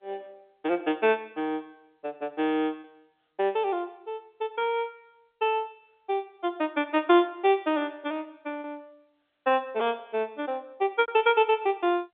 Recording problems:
telephone audio; 240 Hz to 3.7 kHz, G.711
lost packets; 2% of the sound replaced, filled with repeated pitch periods

